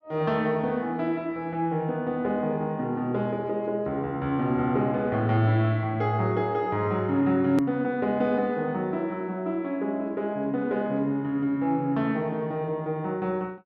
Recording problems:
edit click; at 7.5 s

